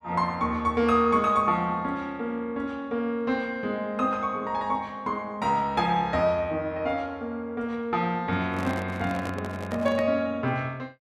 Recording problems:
handling noise; from 8.5 to 10 s; peak -4 dB vs average level

